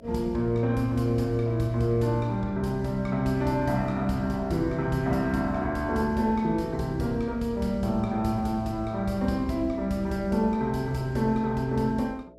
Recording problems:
electrical hum; 60 Hz, harmonics up to 660 Hz, SNR 24 dB

